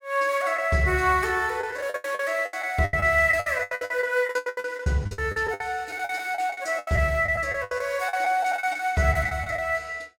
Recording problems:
packet loss; 18% of the sound replaced, filled with the last packet

